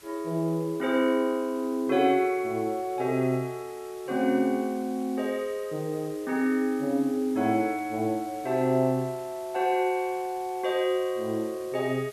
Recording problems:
hiss; slope 0 dB per octave, SNR 22 dB

